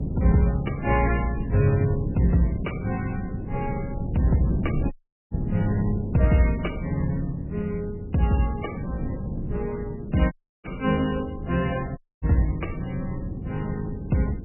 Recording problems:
codec artefacts; MP3, log-spectral distance 2 dB, nothing above 2.6 kHz
mains hum; 50 Hz, harmonics up to 450 Hz, SNR 26 dB
wind on the microphone; below 210 Hz, SNR 6 dB
audio cutting out; at 5 s, at 10 s and at 12 s

